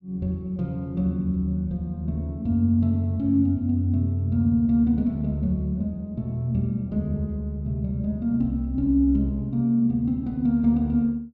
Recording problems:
none

